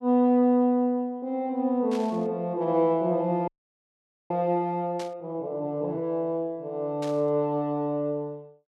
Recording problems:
burst of static; at 2 s, at 5 s and at 7 s; peak -11 dB vs average level
frozen audio; at 3.5 s for 1 s

